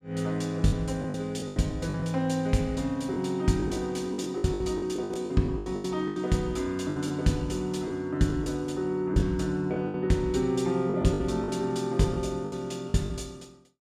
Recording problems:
packet loss; 12% of the sound replaced, filled with the last packet

